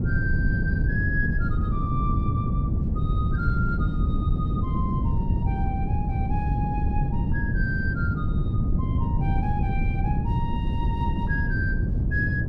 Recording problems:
wind noise; below 160 Hz, SNR -8 dB

